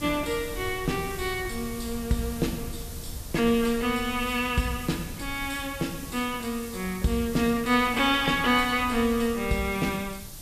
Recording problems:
hiss; SNR 15 dB
wind on the microphone; below 110 Hz, SNR 16 dB

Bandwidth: 14.5 kHz